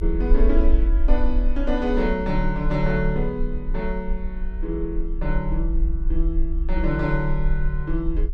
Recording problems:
rumble; below 46 Hz, strongest tone 24 Hz, SNR 0 dB

